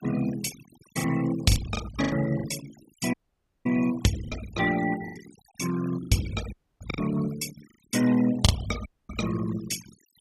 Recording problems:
noise reduction artefacts; signal-to-artefact ratio 13 dB
lost packets; 8% of the sound replaced, filled with the last packet
dropout; at 3 s for 0.5 s, at 6.5 s and at 9 s

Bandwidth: 15 kHz